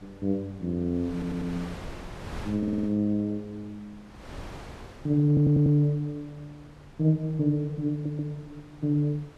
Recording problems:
wind on the microphone; below 910 Hz, SNR 18 dB
audio stuttering; 4 times, first at 1 s

